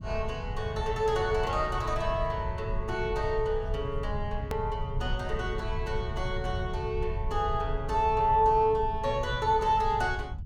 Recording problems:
rumble; below 94 Hz, SNR 7 dB
hard cut with a click; at 4.5 s

